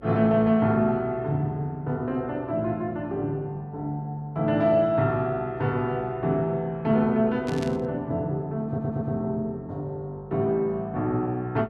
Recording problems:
electrical hum; 50 Hz, harmonics up to 550 Hz, SNR 26 dB
static burst; at 7.5 s; peak -9 dB vs average level
audio stuttering; at 8.5 s

